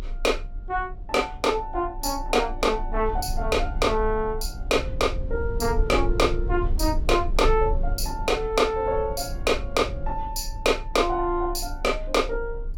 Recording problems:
rumble; below 54 Hz, strongest tone 28 Hz, SNR 8 dB

